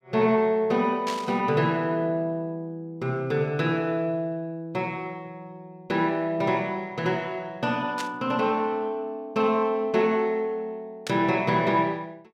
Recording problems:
burst of static; at 1 s, at 8 s and at 11 s; peak -3 dB vs average level

